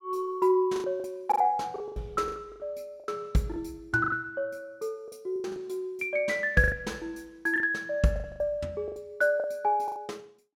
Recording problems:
lost packets; 13% of the sound replaced, filled with the last packet

